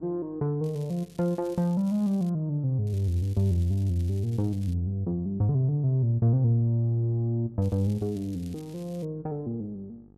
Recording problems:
hum; 50 Hz, harmonics up to 900 Hz, SNR 30 dB
crackling; from 0.5 to 2.5 s, from 3 to 4.5 s and from 7.5 to 9 s; loose cable, SNR 27 dB

